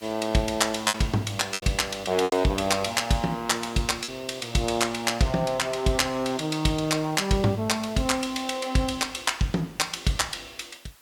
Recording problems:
background hiss; slope 0 dB per octave, SNR 27 dB
packet loss; 2% of the sound replaced, filled with repeated pitch periods

